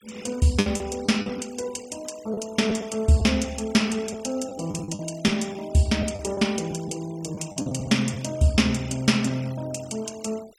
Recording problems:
denoising artefacts; signal-to-artefact ratio 21 dB
packet loss; 6% of the sound replaced, filled with the last packet

